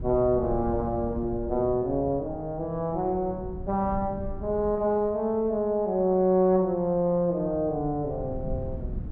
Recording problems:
low-frequency rumble; below 150 Hz, SNR 13 dB

